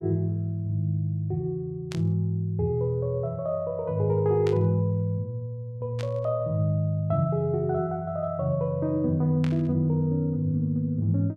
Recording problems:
burst of static; 4 times, first at 2 s; peak -8 dB vs average level

